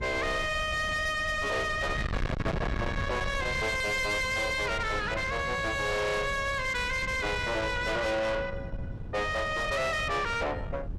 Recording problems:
distorted audio; soft clipping, signal-to-distortion ratio 7 dB
wind noise; below 620 Hz, SNR 8 dB

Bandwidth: 13.5 kHz